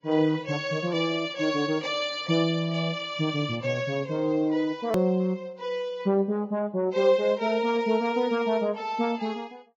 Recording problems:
lossy codec; Vorbis, log-spectral distance 2 dB, nothing above 18.9 kHz
hard cut with a click; at 5 s

